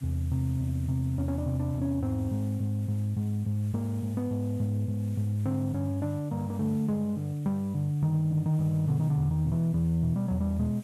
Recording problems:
background hiss; slope -1 dB per octave, SNR 27 dB

